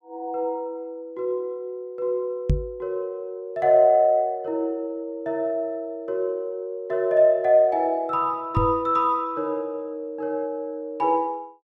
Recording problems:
knock on the microphone; at 2.5 s and at 8.5 s; peak +6 dB vs average level

